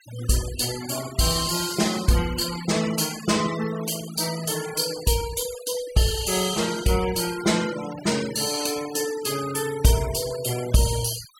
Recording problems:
noise reduction artefacts; signal-to-artefact ratio 13 dB

